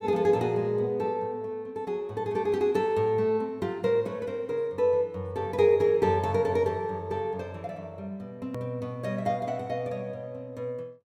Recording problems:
click at an edit; at 8.5 s

